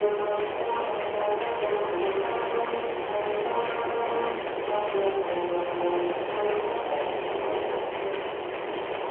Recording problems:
phone line; 300 Hz to 3.2 kHz, AMR-NB
hiss; SNR 2 dB

